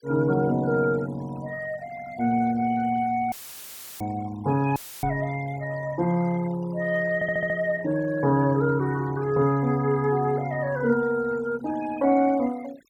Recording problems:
noise reduction artefacts; signal-to-artefact ratio 21 dB
dropout; at 3.5 s for 0.5 s and at 5 s; filled with static
knock on the microphone; at 5 s; peak -11 dB vs average level
audio stuttering; at 7 s

